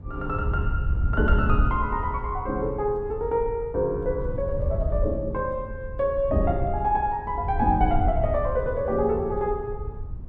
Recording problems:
wind on the microphone; below 86 Hz, SNR 4 dB

